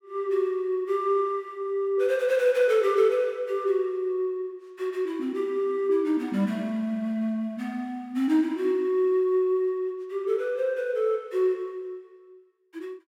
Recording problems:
none

